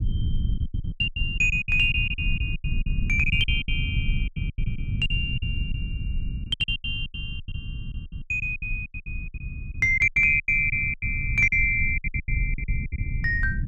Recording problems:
low-frequency rumble; below 110 Hz, SNR 7 dB
packet loss; 20% of the sound replaced, filled with silence

